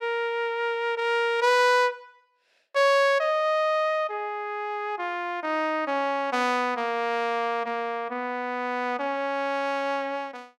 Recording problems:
none

